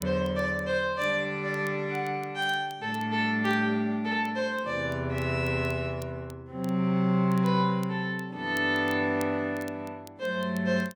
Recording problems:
crackle; vinyl, SNR 25 dB

